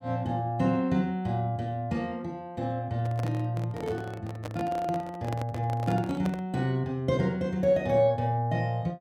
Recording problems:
microphone handling noise; from 3 to 6.5 s; peak -3 dB vs average level

